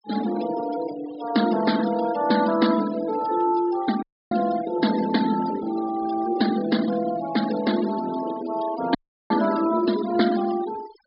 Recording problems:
treble missing; nothing above 5.5 kHz
noise reduction artefacts; signal-to-artefact ratio 13 dB
audio cutting out; at 4 s and at 9 s

